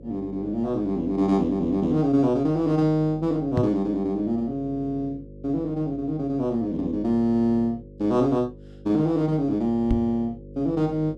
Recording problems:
mains hum; 50 Hz, harmonics up to 550 Hz, SNR 18 dB
microphone thump; at 3.5 s and at 10 s; peak +3 dB vs average level

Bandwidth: 12 kHz